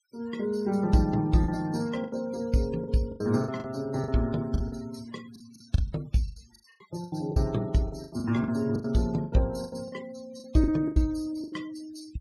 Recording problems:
denoising artefacts; signal-to-artefact ratio 22 dB
packet loss; 14% of the sound replaced, filled with the last packet

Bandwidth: 15 kHz